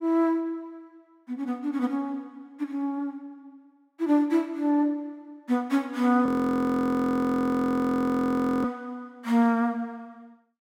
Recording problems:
frozen audio; at 6.5 s for 2.5 s

